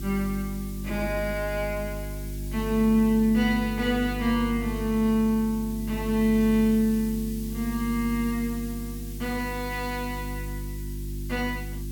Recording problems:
hum; 50 Hz, harmonics up to 350 Hz, SNR 9 dB
hiss; SNR 17 dB

